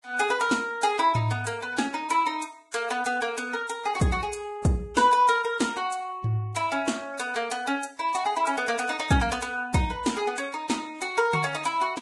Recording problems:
codec artefacts; Vorbis, log-spectral distance 4 dB, nothing above 11 kHz

